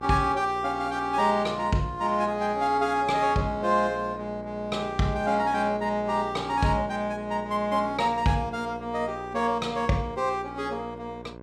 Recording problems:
electrical hum; 60 Hz, harmonics up to 1.7 kHz, SNR 16 dB

